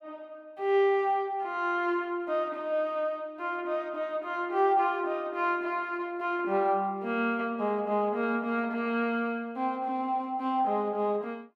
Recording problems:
none

